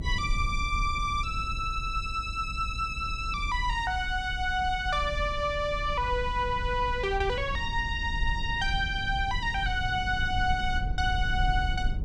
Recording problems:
low-frequency rumble; below 74 Hz, SNR 6 dB

